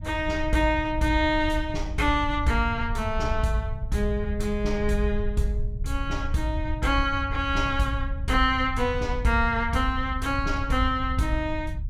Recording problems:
low-frequency rumble; below 82 Hz, SNR 7 dB

